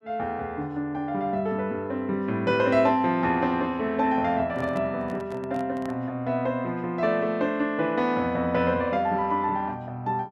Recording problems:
microphone handling noise; from 4.5 to 6 s; peak -9 dB vs average level

